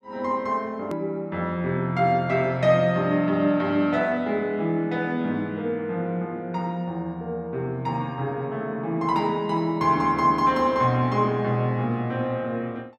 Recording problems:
edit click; at 1 s

